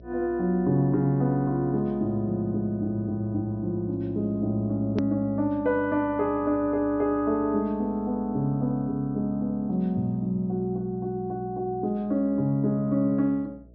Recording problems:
low-pass filter; nothing above 5.9 kHz
hum; 60 Hz, harmonics up to 660 Hz, SNR 23 dB
edit click; at 5 s

